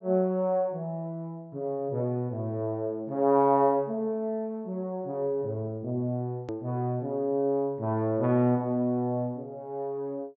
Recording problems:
low-pass filter; nothing above 8 kHz
hard cut with a click; at 6.5 s

